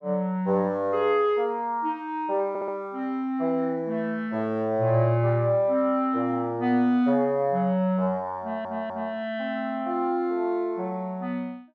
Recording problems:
stutter; at 2.5 s and at 8.5 s

